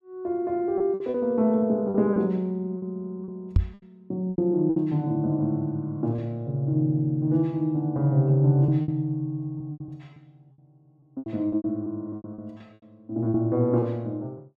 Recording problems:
lost packets; 9% of the sound replaced, filled with repeated pitch periods
knock on the microphone; at 3.5 s; peak +8 dB vs average level

